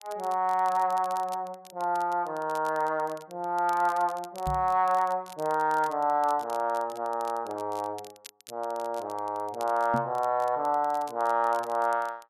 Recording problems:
crackling; vinyl, SNR 23 dB
microphone thump; at 4.5 s and at 10 s; peak 0 dB vs average level

